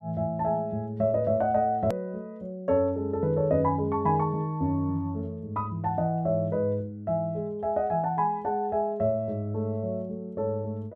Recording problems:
edit click; at 2 s

